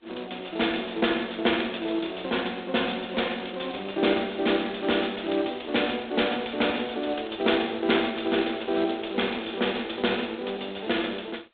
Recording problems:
telephone audio; 280 Hz to 3.7 kHz, G.726

